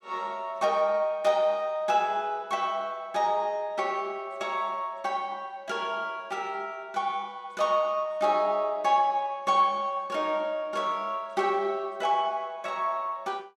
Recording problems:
none

